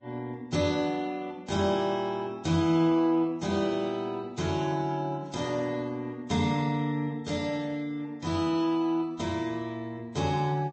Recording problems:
treble cut off; nothing above 7.8 kHz
lossy compression; Vorbis, log-spectral distance 2 dB

